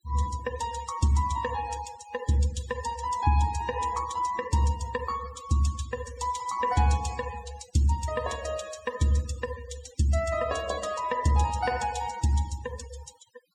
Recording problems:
noise reduction artefacts; signal-to-artefact ratio 15 dB

